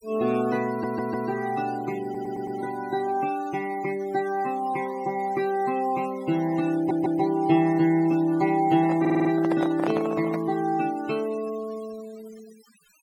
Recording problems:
noise reduction artefacts; signal-to-artefact ratio 20 dB
audio stuttering; 4 times, first at 0.5 s
microphone handling noise; from 8.5 to 10 s; peak -1 dB vs average level

